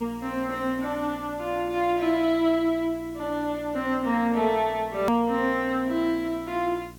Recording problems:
electrical hum; 60 Hz, harmonics up to 1.1 kHz, SNR 20 dB
hiss; slope -1 dB per octave, SNR 27 dB
click at an edit; at 5 s

